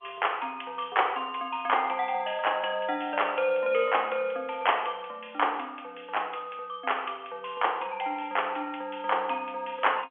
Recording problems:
telephone audio; 280 Hz to 3.4 kHz, G.711

